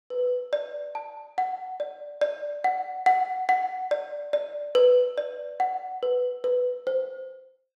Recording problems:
none

